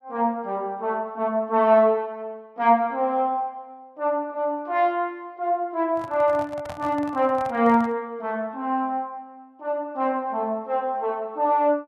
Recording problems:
handling noise; from 6 to 8 s; peak -9 dB vs average level

